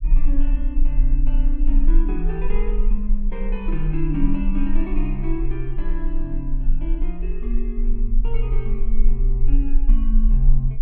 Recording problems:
rumble; below 34 Hz, strongest tone 20 Hz, SNR -6 dB

